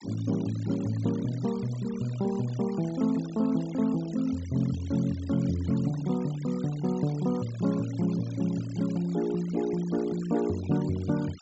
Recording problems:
treble missing; nothing above 7.7 kHz
noise reduction artefacts; signal-to-artefact ratio 20 dB

